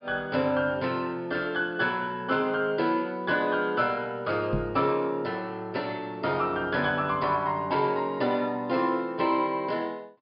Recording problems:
treble cut off; nothing above 5.5 kHz
microphone bump; at 4.5 s; peak +1 dB vs average level

